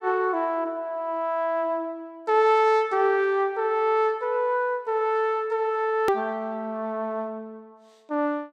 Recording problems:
hard cut with a click; at 6 s

